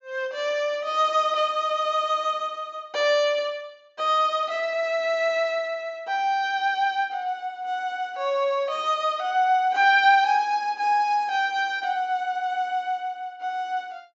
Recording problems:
treble cut off; nothing above 7.4 kHz

